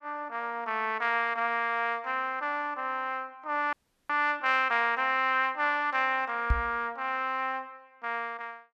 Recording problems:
frozen audio; at 3.5 s
knock on the microphone; at 6.5 s; peak +5 dB vs average level

